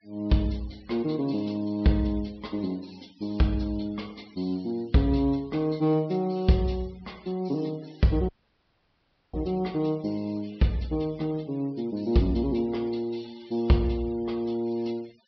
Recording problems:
treble missing; nothing above 5.5 kHz
noise reduction artefacts; signal-to-artefact ratio 26 dB
dropout; at 8.5 s for 1 s

